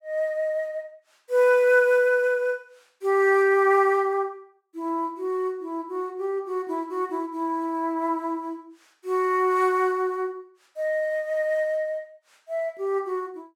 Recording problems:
none

